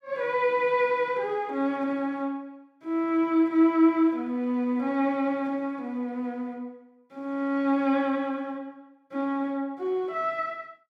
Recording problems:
none

